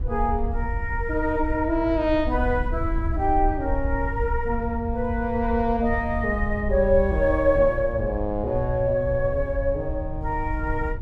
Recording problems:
wind on the microphone; below 76 Hz, SNR 6 dB

